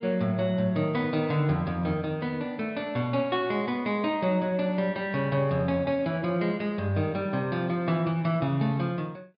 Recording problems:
treble missing; nothing above 5.1 kHz

